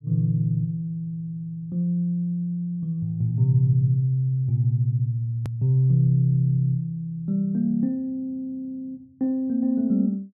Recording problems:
edit click; at 5.5 s

